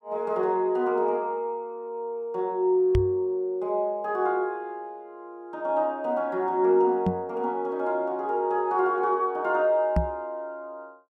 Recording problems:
microphone thump; at 3 s, at 7 s and at 10 s; peak +5 dB vs average level

